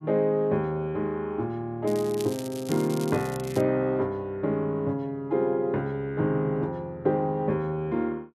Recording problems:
crackling; from 2 to 3.5 s; loose cable, SNR 15 dB

